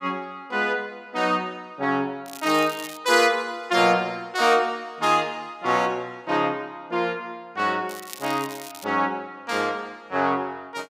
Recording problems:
crackle; at 2.5 s and at 8 s; loose cable, SNR 16 dB

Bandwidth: 15.5 kHz